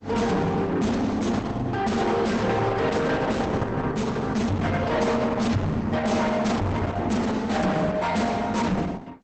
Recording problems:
codec artefacts; Opus, log-spectral distance 4 dB, nothing above 8 kHz
distorted audio; soft clipping, signal-to-distortion ratio 6 dB

